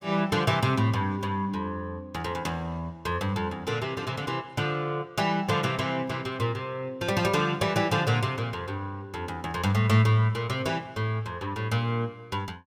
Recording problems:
none

